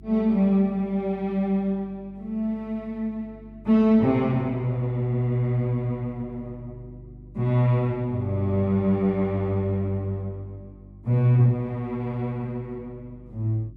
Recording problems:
hum; 50 Hz, harmonics up to 350 Hz, SNR 23 dB

